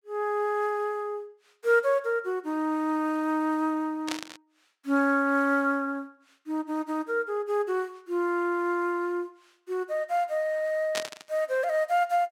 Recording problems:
static burst; at 4 s and at 11 s; peak +1 dB vs average level

